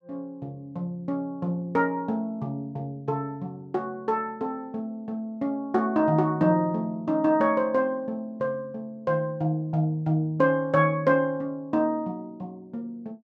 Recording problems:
none

